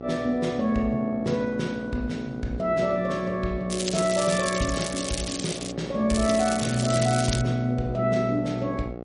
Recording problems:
codec artefacts; MP3, log-spectral distance 6 dB
hum; 60 Hz, harmonics up to 1.4 kHz, SNR 12 dB
crackle; from 3.5 to 5.5 s and from 6 to 7.5 s; loose cable, SNR 6 dB

